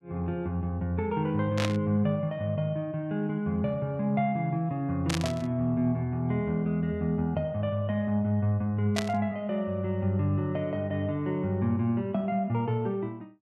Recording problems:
static burst; at 1.5 s, at 5 s and at 9 s; peak +2 dB vs average level

